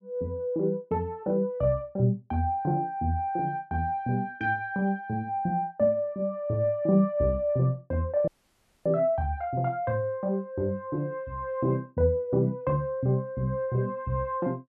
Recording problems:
audio cutting out; at 8.5 s for 0.5 s

